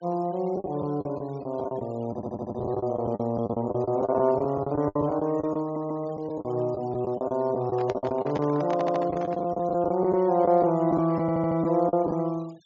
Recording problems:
treble missing; nothing above 7.3 kHz
noise reduction artefacts; signal-to-artefact ratio 27 dB
packet loss; 13% of the sound replaced, filled with the last packet
stutter; 4 times, first at 2 s
handling noise; from 7.5 to 9.5 s; peak -4 dB vs average level

